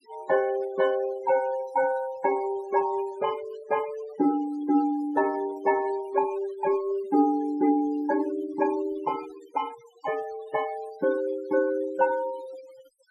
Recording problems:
denoising artefacts; signal-to-artefact ratio 19 dB

